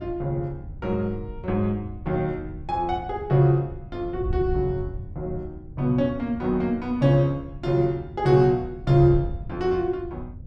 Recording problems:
wind noise; below 110 Hz, SNR 13 dB

